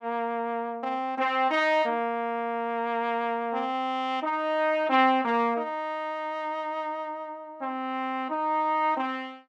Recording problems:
none

